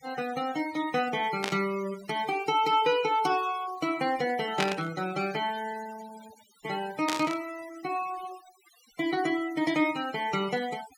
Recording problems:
denoising artefacts; signal-to-artefact ratio 16 dB
burst of static; at 1.5 s, at 4.5 s and at 7 s; peak +3 dB vs average level

